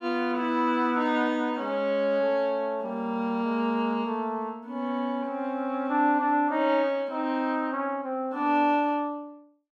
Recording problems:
none

